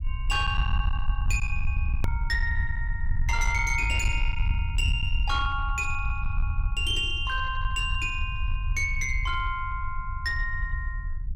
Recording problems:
distorted audio; soft clipping, signal-to-distortion ratio 11 dB
low-frequency rumble; below 74 Hz, SNR 1 dB
click at an edit; at 2 s

